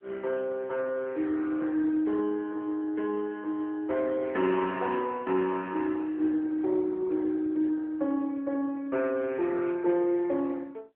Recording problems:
telephone audio; 240 Hz to 3.6 kHz, AMR-NB

